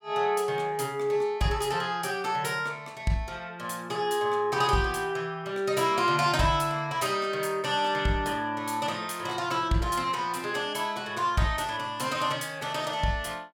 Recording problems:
none

